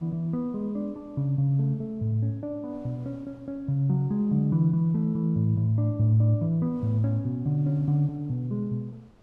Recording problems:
wind on the microphone; below 620 Hz, SNR 31 dB

